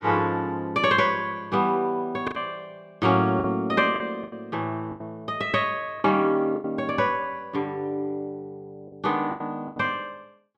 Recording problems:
lost packets; 6% of the sound replaced, filled with the last packet

